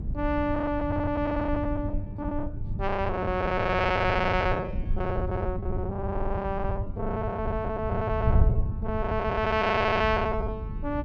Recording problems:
hum; 50 Hz, harmonics up to 400 Hz, SNR 15 dB
low-frequency rumble; below 110 Hz, SNR 8 dB
wind on the microphone; below 110 Hz, SNR 7 dB
packet loss; 16% of the sound replaced, filled with the last packet
stutter; at 1 s, at 6 s and at 10 s

